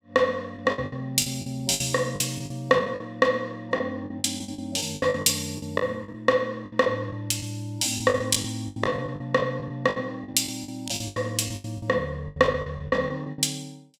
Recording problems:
packet loss; 16% of the sound replaced, filled with the last packet

